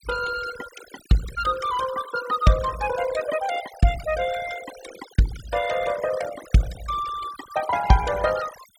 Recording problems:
denoising artefacts; signal-to-artefact ratio 13 dB

